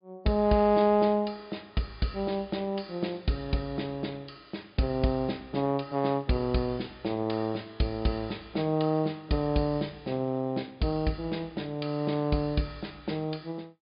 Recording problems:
treble missing; nothing above 5.1 kHz

